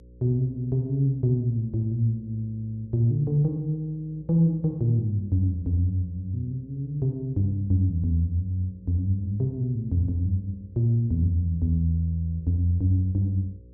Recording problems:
hum; 60 Hz, harmonics up to 540 Hz, SNR 25 dB

